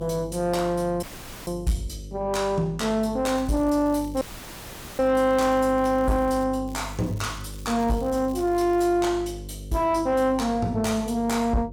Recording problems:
distortion; soft clipping, signal-to-distortion ratio 10 dB
electrical hum; 50 Hz, harmonics up to 550 Hz, SNR 15 dB
dropout; at 1 s and at 4 s for 1 s
crackle; from 3.5 to 6.5 s and from 6.5 to 9 s; loose cable, SNR 25 dB

